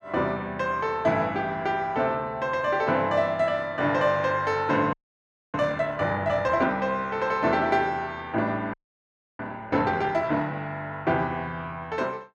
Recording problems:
audio freezing; at 5 s for 0.5 s and at 8.5 s for 0.5 s

